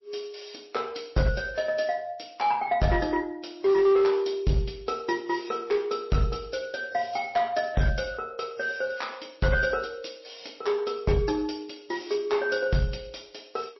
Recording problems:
codec artefacts; MP3, log-spectral distance 6 dB, nothing above 5.7 kHz
distorted audio; hard clipping, uneven, signal-to-distortion ratio 12 dB

